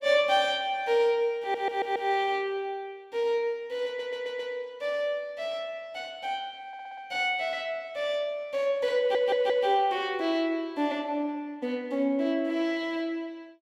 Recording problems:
audio stuttering; 4 times, first at 1.5 s

